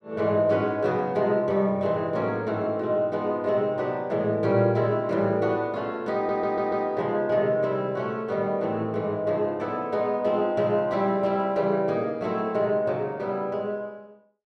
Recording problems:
stutter; at 6 s

